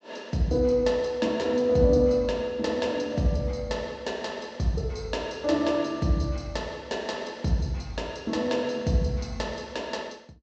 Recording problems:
treble missing; nothing above 8 kHz

